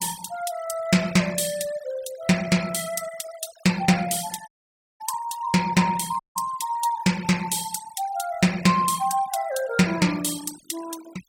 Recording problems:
noise reduction artefacts; signal-to-artefact ratio 15 dB
audio cutting out; at 4.5 s for 0.5 s and at 6 s

